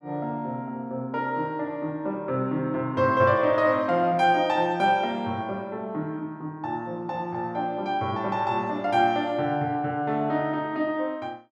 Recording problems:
none

